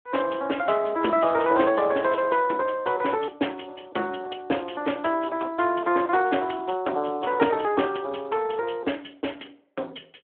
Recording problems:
telephone audio; 260 Hz to 3.4 kHz, Speex

